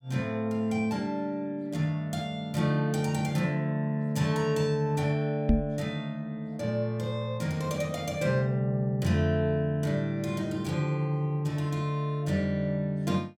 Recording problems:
knock on the microphone; at 5.5 s; peak +9 dB vs average level

